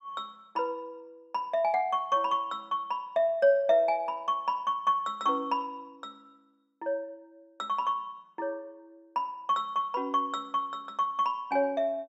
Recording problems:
none

